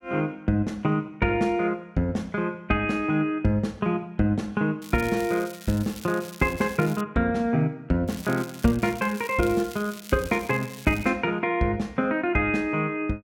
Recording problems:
crackling; from 5 to 7 s and from 8 to 11 s; loose cable, SNR 17 dB

